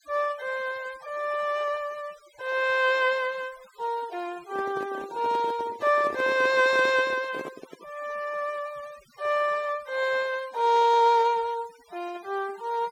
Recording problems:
noise reduction artefacts; signal-to-artefact ratio 22 dB
microphone handling noise; from 4.5 to 8 s; peak -7 dB vs average level

